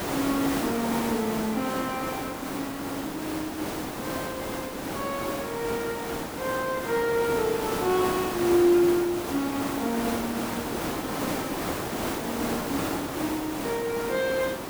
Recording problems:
background hiss; slope -6 dB per octave, SNR 2 dB

